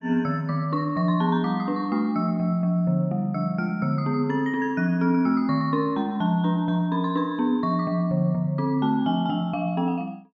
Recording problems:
none

